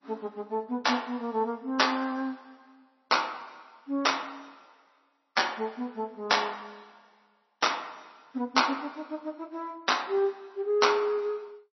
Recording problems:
lossy compression; MP3, log-spectral distance 4 dB, nothing above 5.8 kHz

